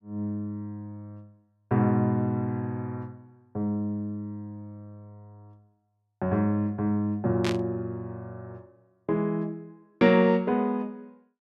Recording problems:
static burst; at 7.5 s; peak -2 dB vs average level

